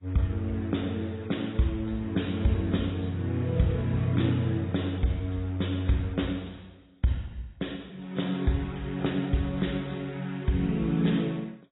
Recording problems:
lossy compression; MP2, then AAC, log-spectral distance 4 dB, nothing above 3.8 kHz

